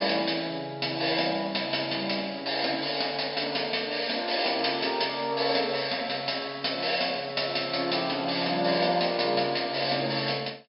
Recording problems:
low-pass filter; nothing above 5.3 kHz

